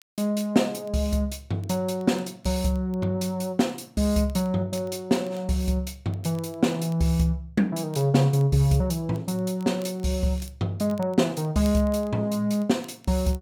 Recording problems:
crackle; vinyl, SNR 29 dB

